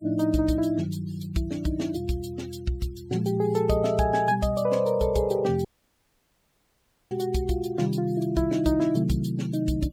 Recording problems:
denoising artefacts; signal-to-artefact ratio 24 dB
dropout; at 5.5 s for 1.5 s

